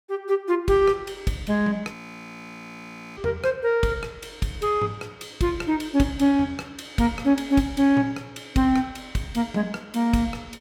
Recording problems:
audio freezing; at 2 s for 1 s

